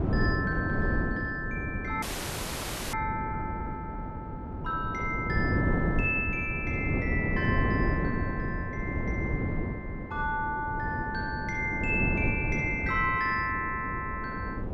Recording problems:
wind on the microphone; below 310 Hz, SNR 1 dB
frozen audio; at 2 s for 1 s

